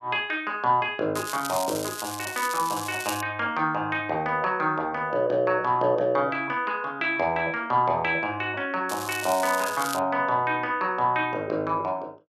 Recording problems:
crackling; from 1 to 3 s and from 9 to 10 s; loose cable, SNR 9 dB

